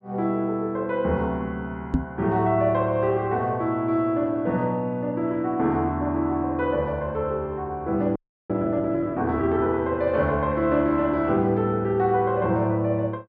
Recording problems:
microphone bump; at 2 s; peak +5 dB vs average level
audio freezing; at 8 s

